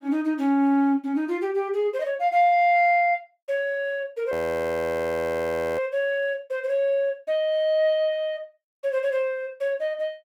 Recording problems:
audio freezing; at 4.5 s for 1.5 s

